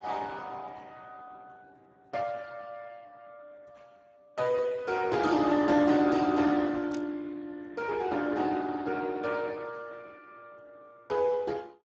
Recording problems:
lossy compression; Speex, log-spectral distance 4 dB, nothing above 7.3 kHz
burst of static; at 7 s; peak -14 dB vs average level

